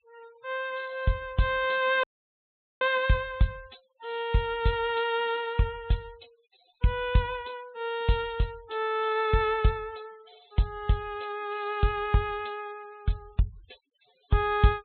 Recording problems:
treble missing; nothing above 4 kHz
noise reduction artefacts; signal-to-artefact ratio 25 dB
audio cutting out; at 2 s for 1 s

